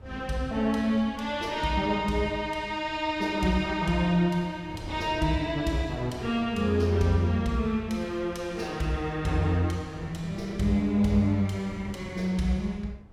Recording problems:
wind on the microphone; below 260 Hz, SNR 19 dB

